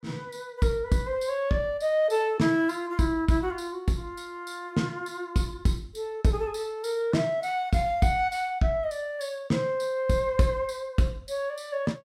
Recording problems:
none

